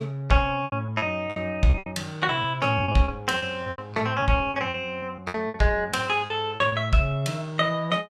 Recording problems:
lost packets; 13% of the sound replaced, filled with repeated pitch periods

